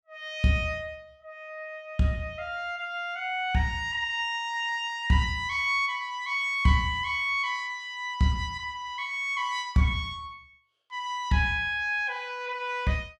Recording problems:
none

